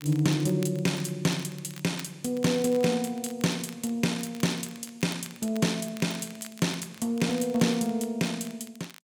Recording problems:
crackling; vinyl, SNR 20 dB

